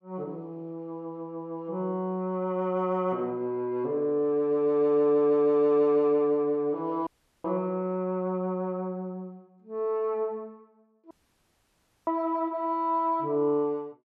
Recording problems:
dropout; at 7 s and at 11 s for 1 s

